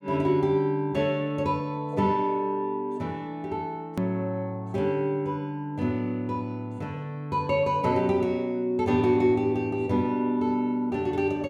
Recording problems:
click at an edit; at 4 s

